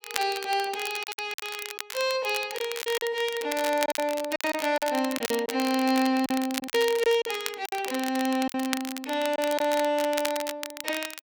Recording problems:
crackling; vinyl, SNR 9 dB
lost packets; 9% of the sound replaced, filled with silence

